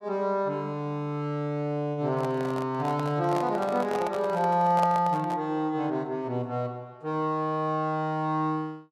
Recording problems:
microphone handling noise; from 2 to 5.5 s; peak 0 dB vs average level

